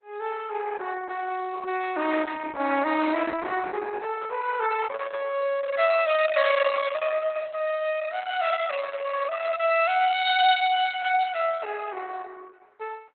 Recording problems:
lossy codec; Opus, log-spectral distance 4 dB, nothing above 3.8 kHz

